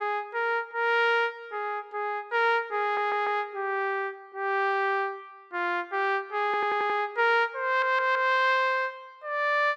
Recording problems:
stutter; at 3 s, at 6.5 s and at 7.5 s

